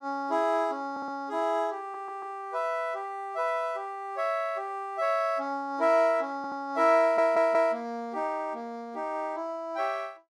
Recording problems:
stutter; 4 times, first at 1 s

